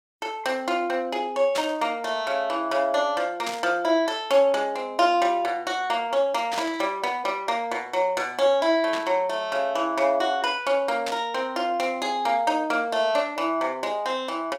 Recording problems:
burst of static; 5 times, first at 1.5 s; peak -2 dB vs average level

